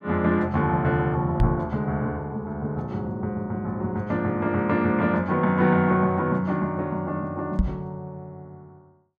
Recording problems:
microphone thump; at 1.5 s and at 7.5 s; peak +6 dB vs average level

